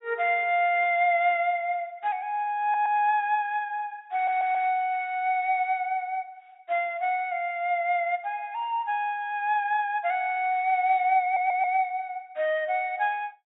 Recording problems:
treble missing; nothing above 4 kHz
audio stuttering; at 2.5 s, at 4 s and at 11 s

